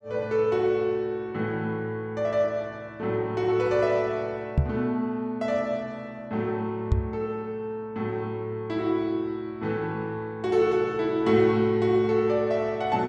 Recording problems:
microphone thump; at 4.5 s and at 7 s; peak +8 dB vs average level

